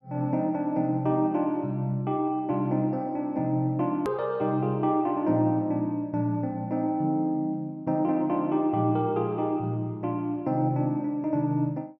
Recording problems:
click at an edit; at 4 s

